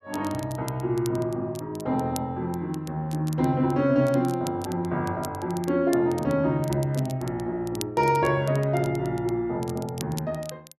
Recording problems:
crackle; vinyl, SNR 18 dB

